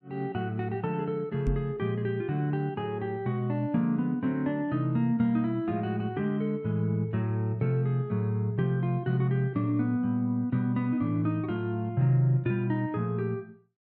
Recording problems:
microphone thump; at 1.5 s; peak +1 dB vs average level

